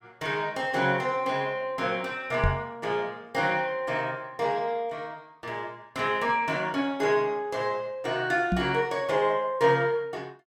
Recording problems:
microphone bump; at 2.5 s and at 8.5 s; peak +5 dB vs average level

